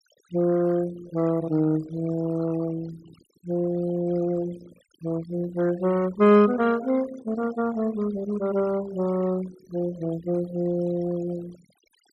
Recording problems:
noise reduction artefacts; signal-to-artefact ratio 20 dB

